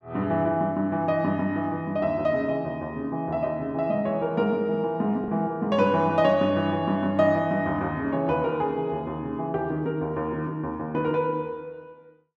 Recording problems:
lost packets; 0.3% of the sound replaced, filled with the last packet

